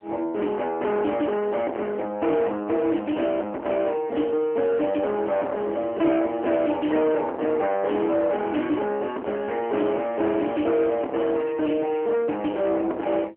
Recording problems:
phone line; 260 Hz to 3.1 kHz, AMR-NB
distorted audio; soft clipping, signal-to-distortion ratio 8 dB
crackle; from 9 to 12 s; loose cable, SNR 23 dB

